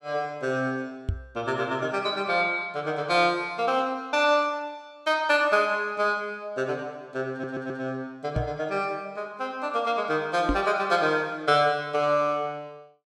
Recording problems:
knock on the microphone; at 1 s, at 8.5 s and at 10 s; peak +4 dB vs average level
stutter; at 7.5 s

